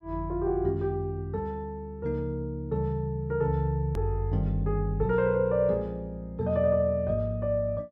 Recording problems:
click at an edit; at 4 s

